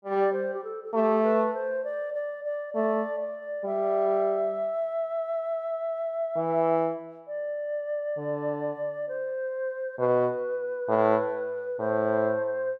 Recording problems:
none

